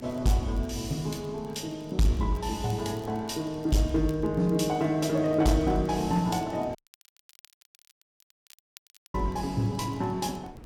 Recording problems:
distortion; hard clipping, uneven, signal-to-distortion ratio 11 dB
wind noise; below 370 Hz, SNR 22 dB
crackling; vinyl, SNR 30 dB
dropout; at 7 s for 2.5 s

